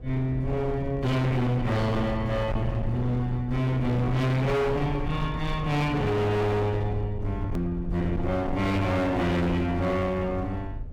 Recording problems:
distortion; hard clipping, signal-to-distortion ratio 6 dB
low-frequency rumble; below 130 Hz, SNR 9 dB
click at an edit; at 7.5 s

